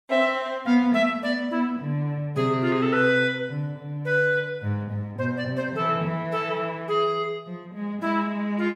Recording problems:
none

